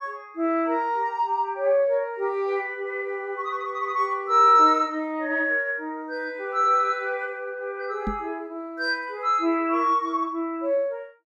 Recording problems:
knock on the microphone; at 8 s; peak -2 dB vs average level

